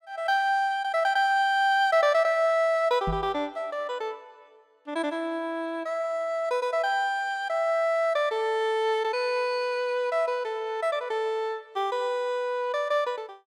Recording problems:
microphone thump; at 3 s; peak -2 dB vs average level

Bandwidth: 16 kHz